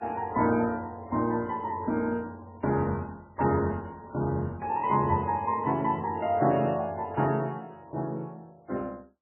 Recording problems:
lossy compression; MP3, log-spectral distance 2 dB, nothing above 2.8 kHz

